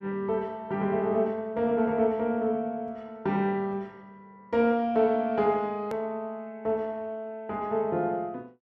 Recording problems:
edit click; at 6 s

